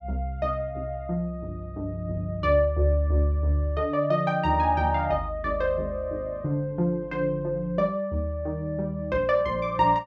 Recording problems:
none

